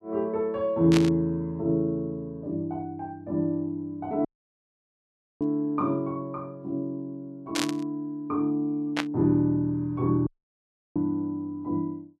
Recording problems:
static burst; 4 times, first at 1 s; peak +4 dB vs average level
dropout; at 4.5 s for 1 s and at 10 s for 0.5 s

